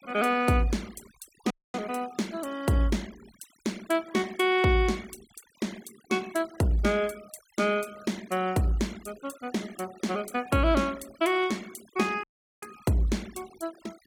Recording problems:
denoising artefacts; signal-to-artefact ratio 22 dB
audio cutting out; at 1.5 s and at 12 s

